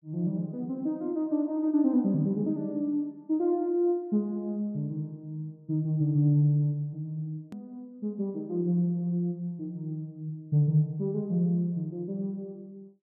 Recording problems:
hard cut with a click; at 7.5 s

